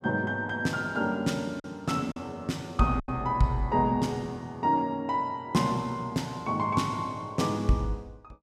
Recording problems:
packet loss; 1.9% of the sound replaced, filled with silence

